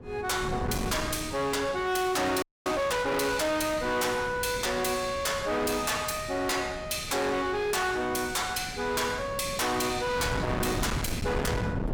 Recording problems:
distorted audio; hard clipping, signal-to-distortion ratio 6 dB
wind on the microphone; below 490 Hz, SNR 9 dB
frozen audio; at 2.5 s

